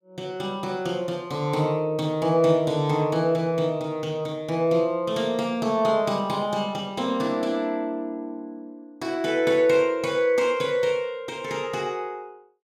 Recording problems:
none

